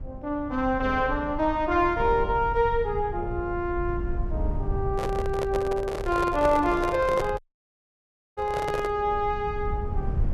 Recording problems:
rumble; below 86 Hz, SNR 9 dB
microphone handling noise; from 5 to 9 s; peak 0 dB vs average level
audio cutting out; at 7.5 s for 1 s

